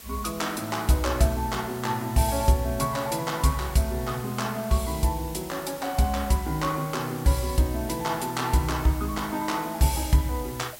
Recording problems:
hiss; slope -1 dB per octave, SNR 16 dB

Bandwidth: 16 kHz